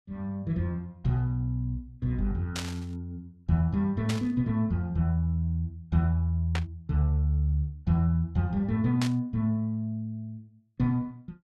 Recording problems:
burst of static; 4 times, first at 2.5 s; peak -1 dB vs average level

